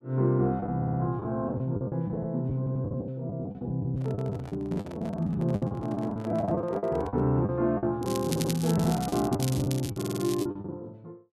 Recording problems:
packet loss; 14% of the sound replaced, filled with the last packet
audio stuttering; 4 times, first at 1 s
microphone handling noise; from 4 to 7.5 s; peak -10 dB vs average level
crackling; from 8 to 10 s; loose cable, SNR 10 dB

